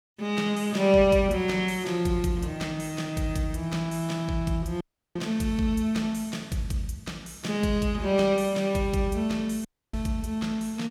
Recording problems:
dropout; at 5 s and at 9.5 s

